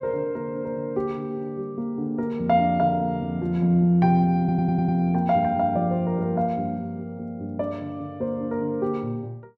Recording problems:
stutter; at 4.5 s

